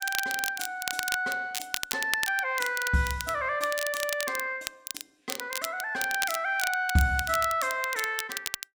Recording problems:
crackling; vinyl, SNR 6 dB

